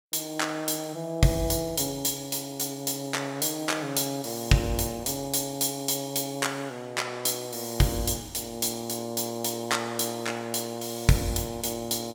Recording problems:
none

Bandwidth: 17.5 kHz